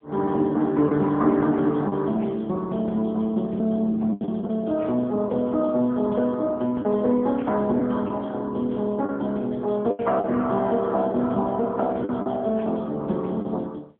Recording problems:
telephone audio; 190 Hz to 3.4 kHz, AMR-NB
packet loss; 4% of the sound replaced, filled with the last packet

